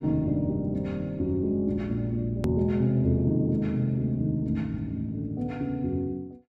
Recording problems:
click at an edit; at 2.5 s

